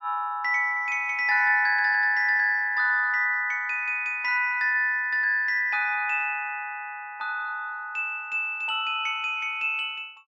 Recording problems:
none

